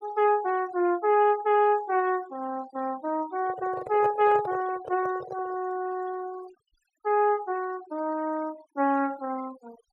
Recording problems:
noise reduction artefacts; signal-to-artefact ratio 21 dB
handling noise; from 3.5 to 5.5 s; peak -3 dB vs average level

